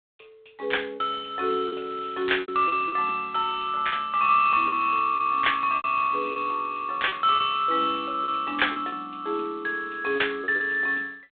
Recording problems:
phone line; 300 Hz to 3.7 kHz, G.726
lost packets; 7% of the sound replaced, filled with repeated pitch periods
crackling; at 1.5 s; loose cable, SNR 29 dB

